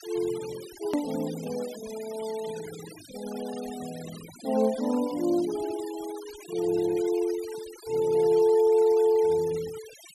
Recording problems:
denoising artefacts; signal-to-artefact ratio 18 dB
edit click; at 1 s

